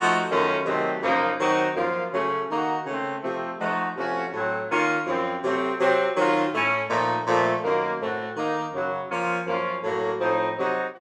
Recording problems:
none

